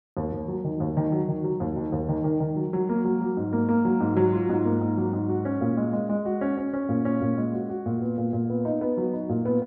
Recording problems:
none

